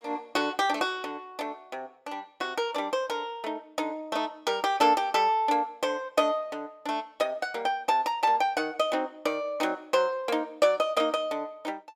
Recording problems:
none

